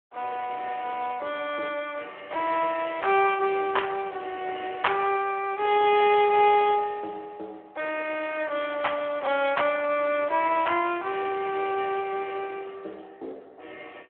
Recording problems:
phone line; 320 Hz to 3.3 kHz, Speex

